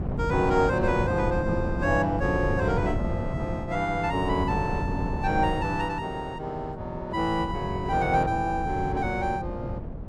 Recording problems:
wind on the microphone; below 240 Hz, SNR 5 dB

